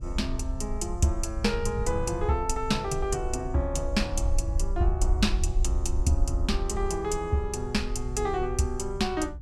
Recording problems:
low-frequency rumble; below 62 Hz, SNR 4 dB
wind on the microphone; below 110 Hz, SNR 12 dB

